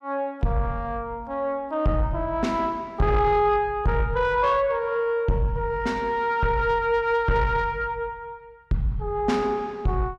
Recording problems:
distorted audio; soft clipping, signal-to-distortion ratio 12 dB

